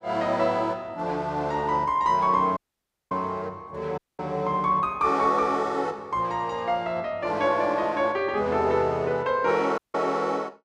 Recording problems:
dropout; at 2.5 s for 0.5 s, at 4 s and at 10 s

